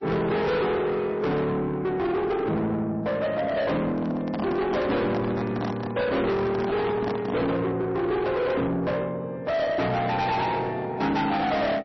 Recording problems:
codec artefacts; MP3, log-spectral distance 2 dB, nothing above 5.8 kHz
distorted audio; soft clipping, signal-to-distortion ratio 6 dB
handling noise; from 4 to 7.5 s; peak 0 dB vs average level

